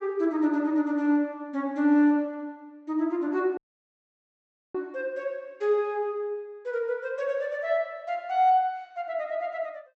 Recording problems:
treble cut off; nothing above 8 kHz
audio cutting out; at 3.5 s for 1 s

